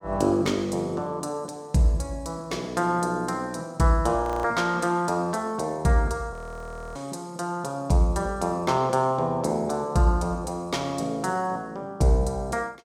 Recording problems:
frozen audio; at 4 s and at 6.5 s for 0.5 s

